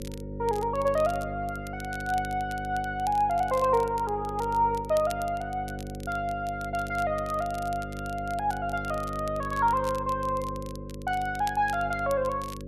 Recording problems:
hum; 50 Hz, harmonics up to 550 Hz, SNR 9 dB
crackling; vinyl, SNR 20 dB

